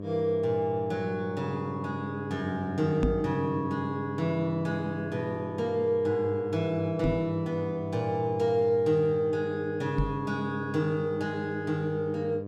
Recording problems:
hum; 50 Hz, harmonics up to 1.1 kHz, SNR 10 dB
microphone thump; at 3 s, at 7 s and at 10 s; peak +5 dB vs average level

